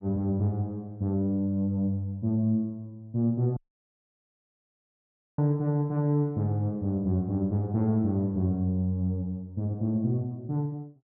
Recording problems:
dropout; at 3.5 s for 2 s

